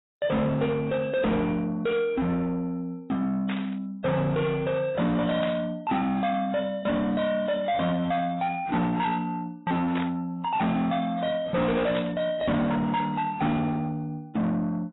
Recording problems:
lossy codec; AAC, log-spectral distance 2 dB, nothing above 3.8 kHz
distorted audio; soft clipping, signal-to-distortion ratio 6 dB
burst of static; 4 times, first at 3.5 s; peak -4 dB vs average level

